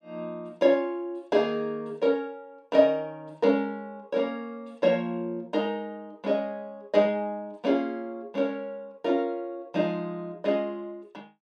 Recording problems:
none

